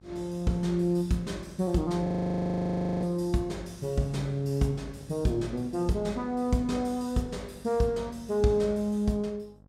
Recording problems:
hum; 50 Hz, harmonics up to 1.1 kHz, SNR 23 dB
audio freezing; at 2 s for 1 s

